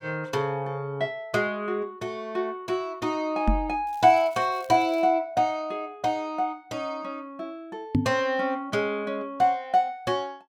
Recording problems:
microphone thump; at 3.5 s and at 8 s; peak +7 dB vs average level
crackle; from 4 to 5 s; loose cable, SNR 27 dB

